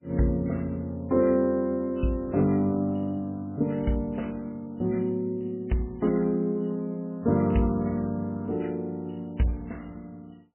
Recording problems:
codec artefacts; MP3, log-spectral distance 2 dB, nothing above 2.9 kHz

